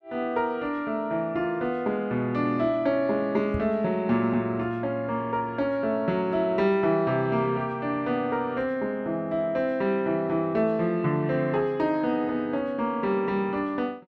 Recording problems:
knock on the microphone; at 3.5 s; peak -2 dB vs average level

